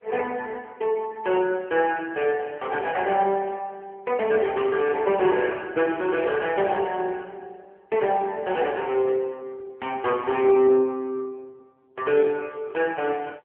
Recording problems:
telephone audio; 240 Hz to 3.3 kHz, AMR-NB

